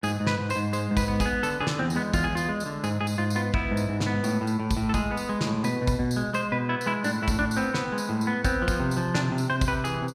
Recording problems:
none

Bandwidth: 14.5 kHz